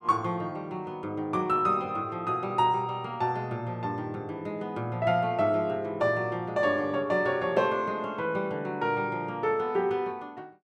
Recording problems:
none

